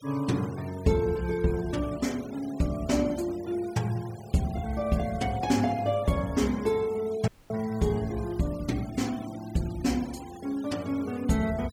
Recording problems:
denoising artefacts; signal-to-artefact ratio 20 dB
dropout; at 7.5 s

